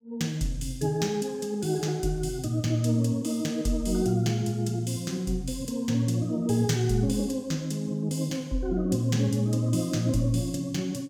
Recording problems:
none

